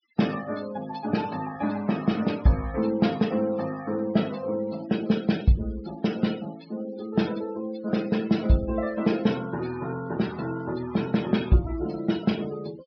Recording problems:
treble cut off; nothing above 5.5 kHz
denoising artefacts; signal-to-artefact ratio 18 dB

